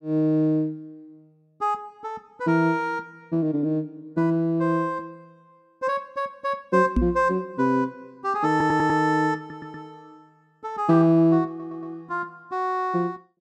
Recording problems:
knock on the microphone; at 7 s; peak +5 dB vs average level
stutter; at 8.5 s, at 9.5 s and at 11 s

